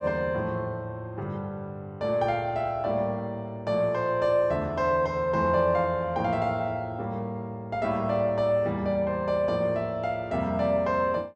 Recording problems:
none

